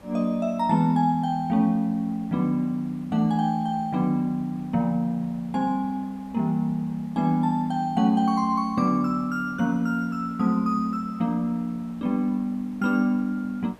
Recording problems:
background hiss; SNR 26 dB

